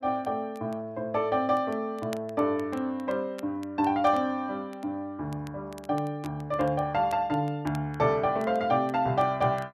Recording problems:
crackle; vinyl, SNR 26 dB

